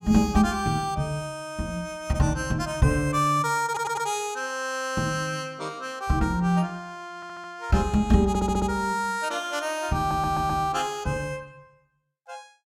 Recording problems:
audio stuttering; 4 times, first at 3.5 s

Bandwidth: 16.5 kHz